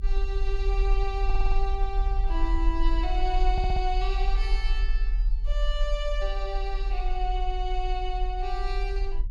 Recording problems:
rumble; below 40 Hz, strongest tone 38 Hz, SNR -4 dB
stutter; at 1.5 s and at 3.5 s

